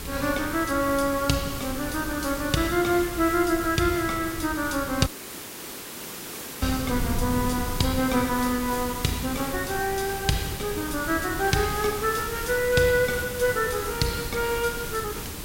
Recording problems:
hiss; SNR 9 dB
wind on the microphone; below 160 Hz, SNR 12 dB
audio cutting out; at 5 s for 1.5 s

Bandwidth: 16 kHz